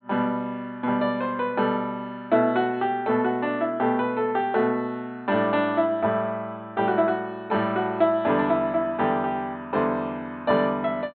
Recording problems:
treble cut off; nothing above 4.2 kHz

